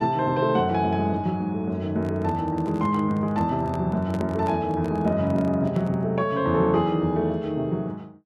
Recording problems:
handling noise; from 2 to 6 s; peak -6 dB vs average level

